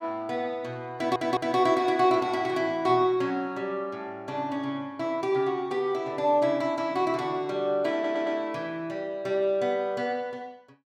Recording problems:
stutter; at 1 s and at 8 s

